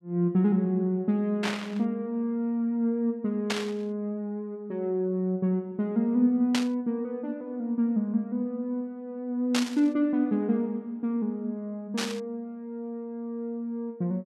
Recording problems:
burst of static; 5 times, first at 1.5 s; peak +3 dB vs average level

